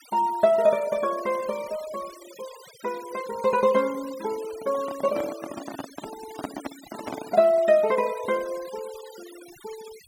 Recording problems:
noise reduction artefacts; signal-to-artefact ratio 19 dB
microphone handling noise; from 4.5 to 7.5 s; peak -3 dB vs average level

